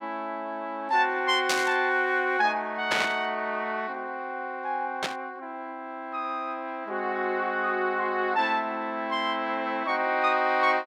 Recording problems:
burst of static; at 1.5 s, at 3 s and at 5 s; peak +4 dB vs average level

